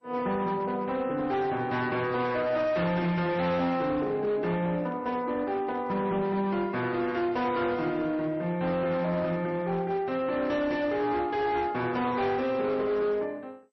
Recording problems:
lossy compression; MP3, then MP2, log-spectral distance 2 dB
distorted audio; hard clipping, signal-to-distortion ratio 12 dB

